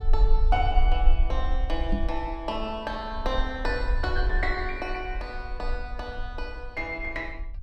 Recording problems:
low-frequency rumble; below 46 Hz, SNR -1 dB
microphone bump; at 2 s; peak +4 dB vs average level

